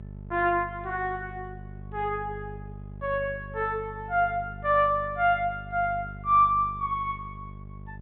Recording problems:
treble missing; nothing above 4 kHz
electrical hum; 50 Hz, harmonics up to 650 Hz, SNR 15 dB

